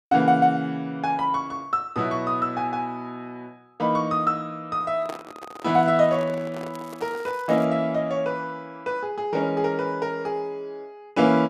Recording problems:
handling noise; from 5 to 7.5 s; peak -6 dB vs average level
crackling; at 6.5 s; loose cable, SNR 27 dB

